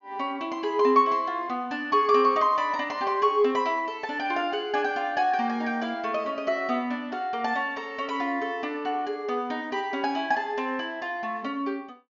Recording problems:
low-pass filter; nothing above 7.1 kHz

